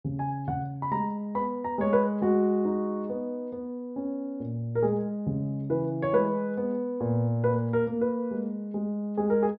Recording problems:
low-pass filter; nothing above 5.5 kHz

